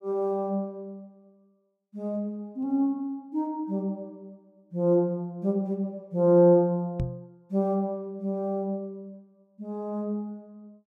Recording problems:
microphone bump; at 7 s; peak +1 dB vs average level

